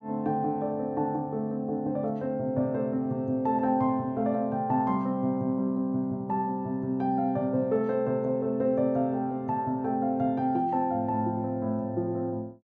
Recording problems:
none

